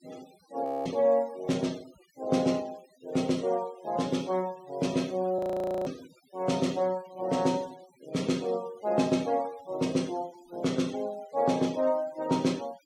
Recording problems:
noise reduction artefacts; signal-to-artefact ratio 22 dB
frozen audio; at 0.5 s and at 5.5 s

